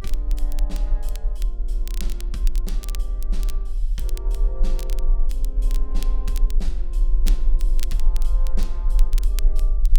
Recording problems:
low-frequency rumble; below 38 Hz, strongest tone 18 Hz, SNR -15 dB
crackling; vinyl, SNR 2 dB

